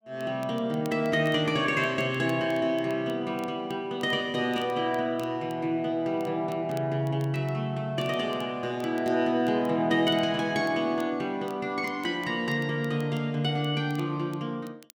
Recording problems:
crackle; vinyl, SNR 27 dB

